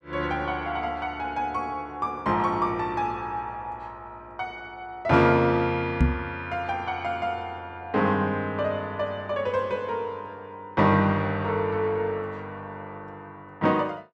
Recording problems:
knock on the microphone; at 6 s; peak +8 dB vs average level

